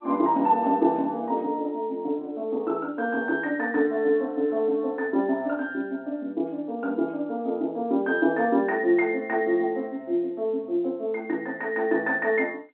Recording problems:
phone line; 240 Hz to 3.6 kHz, G.711

